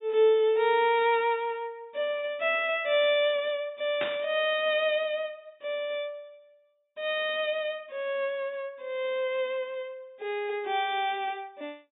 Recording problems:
treble cut off; nothing above 4 kHz
static burst; at 4 s; peak -1 dB vs average level

